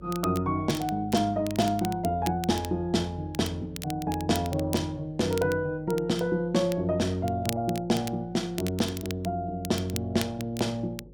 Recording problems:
hum; 50 Hz, harmonics up to 550 Hz, SNR 22 dB
crackling; vinyl, SNR 14 dB

